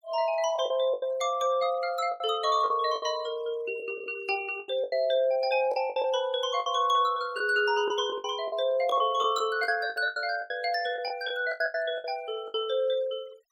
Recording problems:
noise reduction artefacts; signal-to-artefact ratio 23 dB
lost packets; 12% of the sound replaced, filled with the last packet

